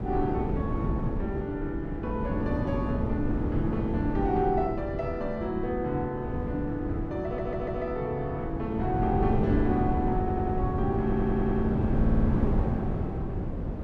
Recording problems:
wind on the microphone; below 260 Hz, SNR 0 dB
audio stuttering; 4 times, first at 7 s

